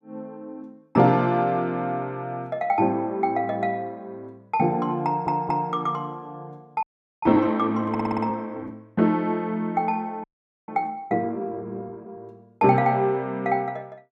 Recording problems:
audio stuttering; at 5 s and at 8 s
audio freezing; at 7 s and at 10 s

